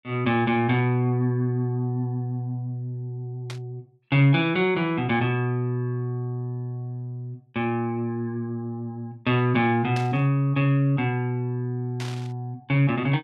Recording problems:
static burst; at 3.5 s, at 10 s and at 12 s; peak -7 dB vs average level

